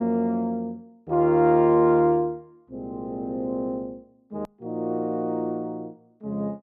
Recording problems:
edit click; at 4.5 s

